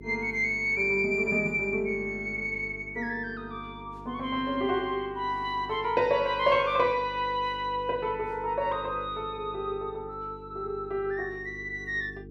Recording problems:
hum; 50 Hz, harmonics up to 450 Hz, SNR 17 dB

